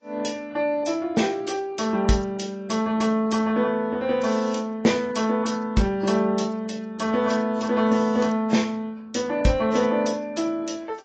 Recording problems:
lossy compression; AAC, log-spectral distance 3 dB

